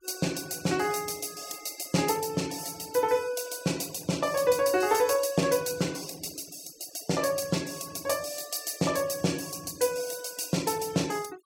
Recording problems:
noise reduction artefacts; signal-to-artefact ratio 19 dB

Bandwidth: 16.5 kHz